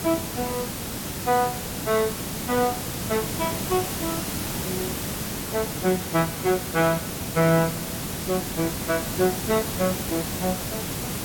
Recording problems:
hiss; slope -3 dB per octave, SNR 3 dB

